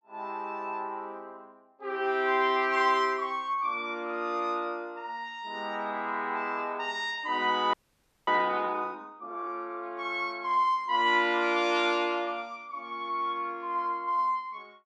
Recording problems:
audio freezing; at 7.5 s for 0.5 s

